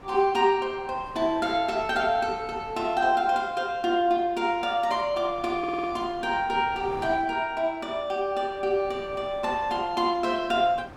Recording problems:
wind noise; below 970 Hz, SNR 21 dB
stutter; at 5.5 s

